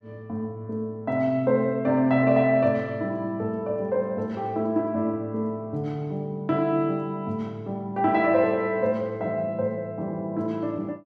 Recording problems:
none

